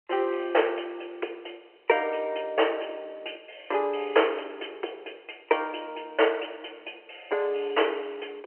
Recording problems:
telephone audio; 320 Hz to 3.1 kHz, G.711

